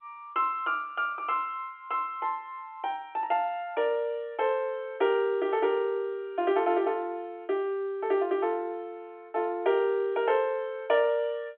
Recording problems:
phone line; 280 Hz to 3.6 kHz, G.711

